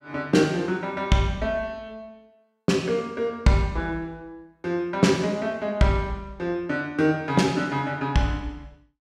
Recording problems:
none

